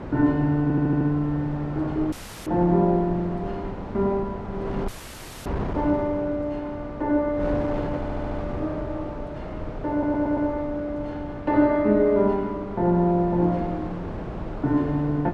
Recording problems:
wind noise; below 560 Hz, SNR 10 dB
audio stuttering; at 0.5 s, at 8 s and at 10 s
audio cutting out; at 2 s and at 5 s for 0.5 s

